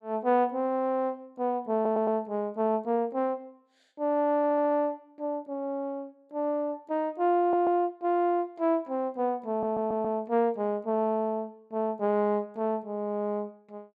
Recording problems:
audio stuttering; 4 times, first at 1.5 s

